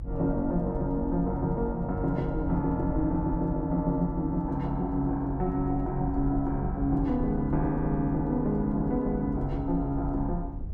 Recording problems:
rumble; below 66 Hz, SNR 9 dB

